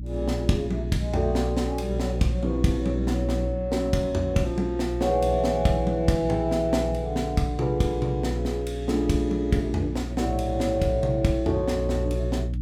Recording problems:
hum; 60 Hz, harmonics up to 300 Hz, SNR 6 dB

